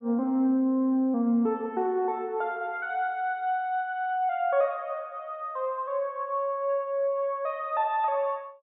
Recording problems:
treble cut off; nothing above 4 kHz

